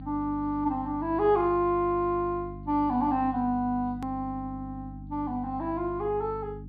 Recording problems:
treble missing; nothing above 4.7 kHz
hum; 50 Hz, harmonics up to 300 Hz, SNR 14 dB
hard cut with a click; at 4 s

